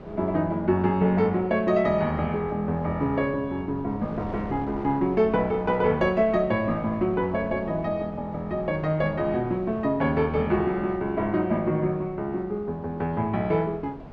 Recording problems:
wind on the microphone; below 540 Hz, SNR 17 dB

